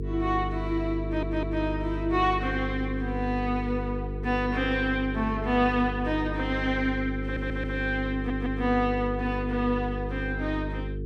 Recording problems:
electrical hum; 50 Hz, harmonics up to 450 Hz, SNR 5 dB
stutter; at 1 s, at 7 s and at 8 s

